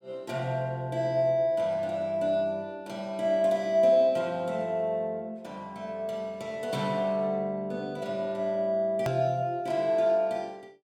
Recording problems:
click at an edit; at 9 s

